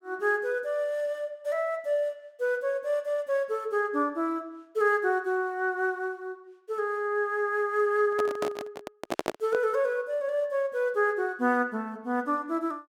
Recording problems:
handling noise; from 8 to 9.5 s; peak +4 dB vs average level

